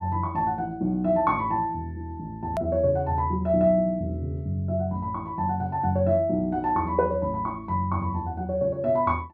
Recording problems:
hard cut with a click; at 2.5 s

